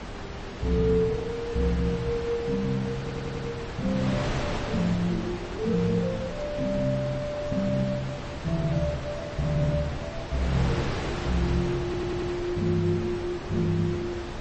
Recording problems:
lossy codec; MP3, then AAC, log-spectral distance 2 dB
wind noise; below 1.3 kHz, SNR 7 dB
audio stuttering; at 3 s and at 12 s

